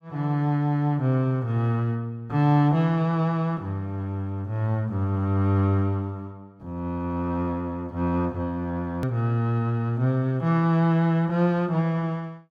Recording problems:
edit click; at 9 s

